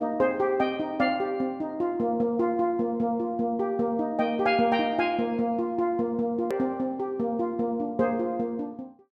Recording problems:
edit click; at 6.5 s

